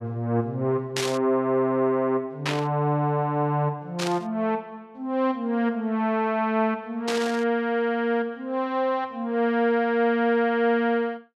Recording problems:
static burst; 4 times, first at 1 s; peak +1 dB vs average level

